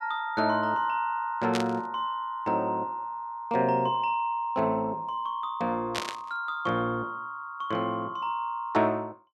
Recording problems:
burst of static; at 1.5 s and at 6 s; peak +1 dB vs average level

